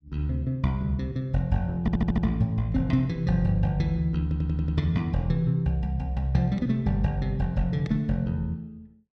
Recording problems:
audio stuttering; at 2 s and at 4 s

